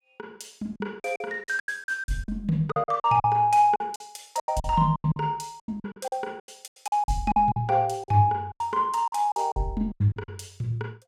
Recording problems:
packet loss; 17% of the sound replaced, filled with silence

